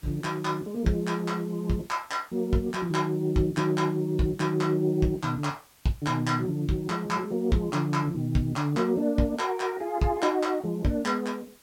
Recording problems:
background hiss; slope -1 dB per octave, SNR 28 dB

